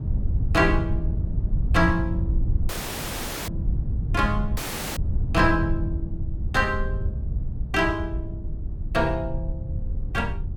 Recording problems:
wind noise; below 94 Hz, SNR 3 dB
dropout; at 2.5 s for 1 s and at 4.5 s

